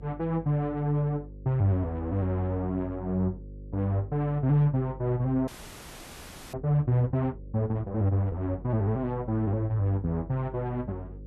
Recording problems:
hum; 50 Hz, harmonics up to 550 Hz, SNR 16 dB
frozen audio; at 5.5 s for 1 s

